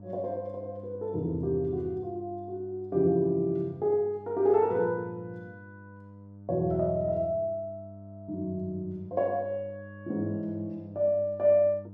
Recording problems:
electrical hum; 50 Hz, harmonics up to 700 Hz, SNR 18 dB

